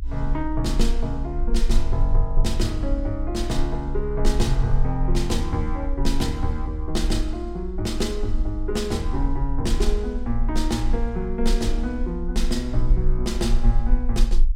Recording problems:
rumble; below 40 Hz, strongest tone 24 Hz, SNR 1 dB

